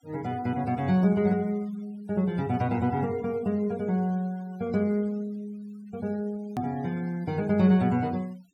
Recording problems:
noise reduction artefacts; signal-to-artefact ratio 25 dB
hard cut with a click; at 6.5 s

